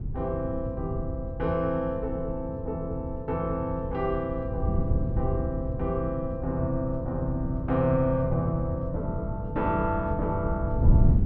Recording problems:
wind noise; below 140 Hz, SNR 2 dB

